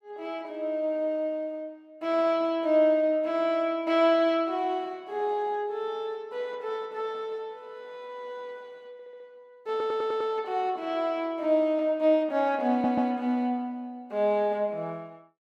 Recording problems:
audio stuttering; at 9 s, at 9.5 s and at 13 s

